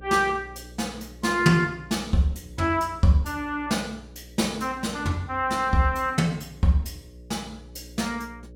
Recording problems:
electrical hum; 60 Hz, harmonics up to 600 Hz, SNR 21 dB

